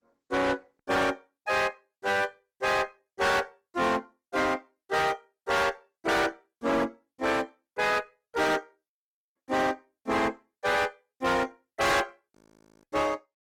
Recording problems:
codec artefacts; Opus, log-spectral distance 4 dB, nothing above 17.1 kHz
distorted audio; hard clipping, signal-to-distortion ratio 6 dB
audio freezing; at 9 s and at 12 s

